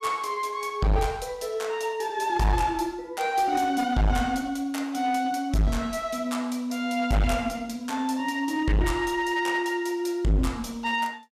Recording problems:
distortion; hard clipping, uneven, signal-to-distortion ratio 7 dB

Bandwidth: 14.5 kHz